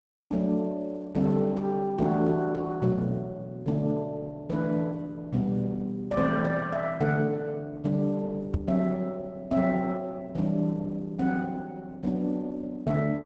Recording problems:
lossy codec; Opus, log-spectral distance 2 dB, nothing above 8 kHz
microphone thump; at 8.5 s; peak +4 dB vs average level

